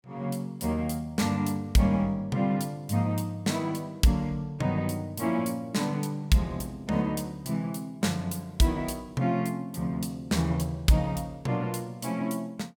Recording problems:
none

